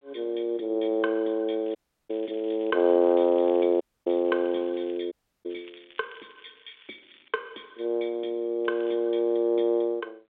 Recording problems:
phone line; 280 Hz to 3.7 kHz, G.726
crackling; from 1.5 to 5 s, from 5.5 to 7.5 s and at 8.5 s; loose cable, SNR 28 dB
dropout; at 2 s, at 4 s and at 5 s

